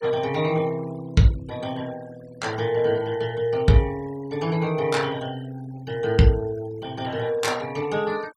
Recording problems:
denoising artefacts; signal-to-artefact ratio 20 dB

